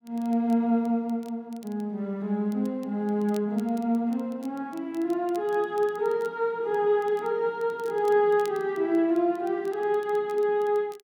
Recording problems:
crackling; vinyl, SNR 28 dB

